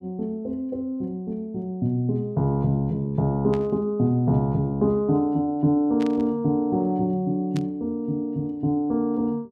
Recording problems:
static burst; at 3.5 s, at 6 s and at 7.5 s; peak -11 dB vs average level

